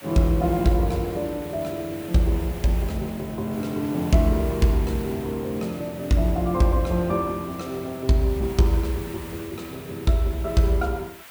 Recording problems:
hiss; SNR 18 dB

